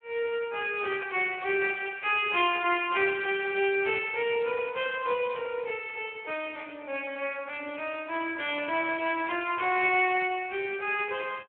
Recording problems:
phone line; 300 Hz to 3.3 kHz, Speex

